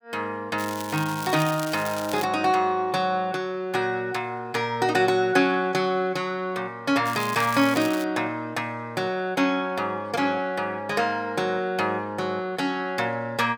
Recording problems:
crackling; from 0.5 to 2.5 s and at 7 s; loose cable, SNR 12 dB

